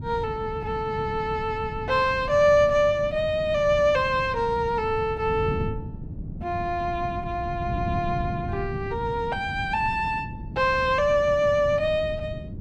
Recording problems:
wind on the microphone; below 190 Hz, SNR 10 dB

